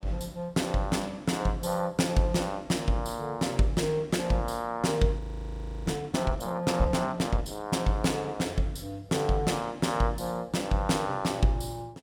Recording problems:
audio freezing; at 5 s for 0.5 s

